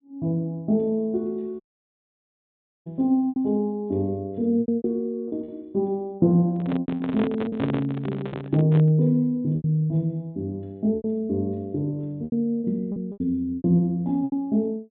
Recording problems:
treble cut off; nothing above 4 kHz
lost packets; 9% of the sound replaced, filled with repeated pitch periods
dropout; at 1.5 s for 1.5 s
handling noise; from 6.5 to 9 s; peak -1 dB vs average level

